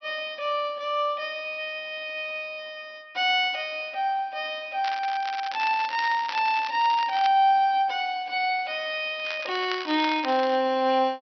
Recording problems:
treble cut off; nothing above 5.7 kHz
crackle; from 5 to 7.5 s and from 9 to 11 s; loose cable, SNR 12 dB

